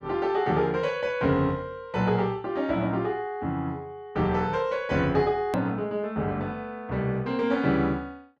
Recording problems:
hard cut with a click; at 5.5 s

